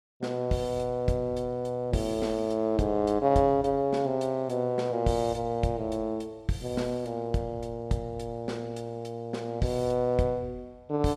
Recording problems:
none

